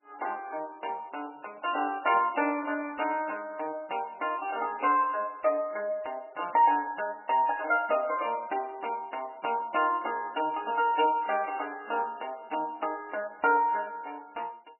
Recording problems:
lossy compression; MP3, log-spectral distance 4 dB, nothing above 2.4 kHz

